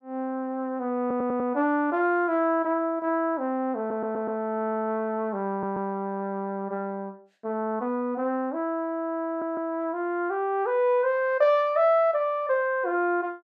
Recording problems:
stutter; 4 times, first at 1 s

